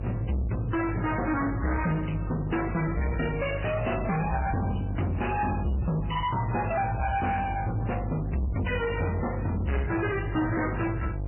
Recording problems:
codec artefacts; MP3, then MP3, log-spectral distance 5 dB, nothing above 3 kHz
distorted audio; soft clipping, signal-to-distortion ratio 6 dB
electrical hum; 50 Hz, harmonics up to 650 Hz, SNR 5 dB

